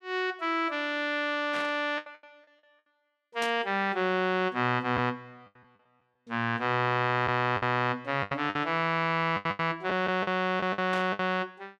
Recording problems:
lost packets; 7% of the sound replaced, filled with the last packet
static burst; at 1.5 s, at 3.5 s and at 11 s; peak -5 dB vs average level

